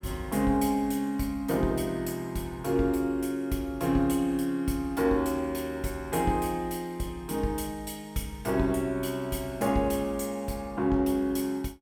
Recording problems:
none

